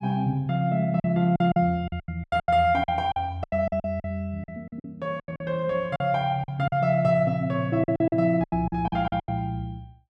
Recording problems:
lost packets; 15% of the sound replaced, filled with silence

